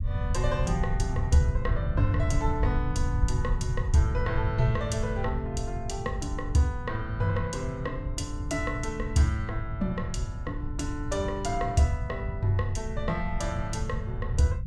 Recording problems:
rumble; below 110 Hz, SNR 2 dB

